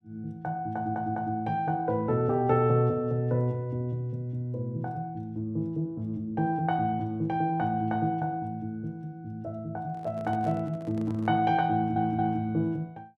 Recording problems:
stutter; at 1 s and at 12 s
handling noise; from 10 to 11 s; peak -11 dB vs average level

